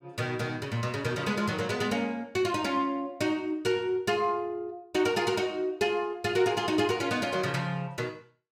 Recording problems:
none

